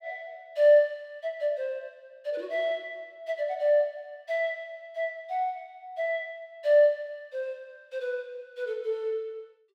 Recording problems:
none

